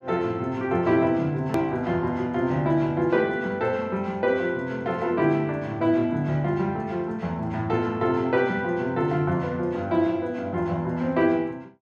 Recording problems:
click at an edit; at 1.5 s

